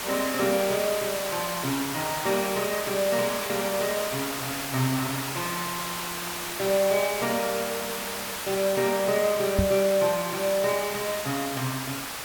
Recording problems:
background hiss; SNR 4 dB
microphone bump; at 9.5 s; peak +7 dB vs average level

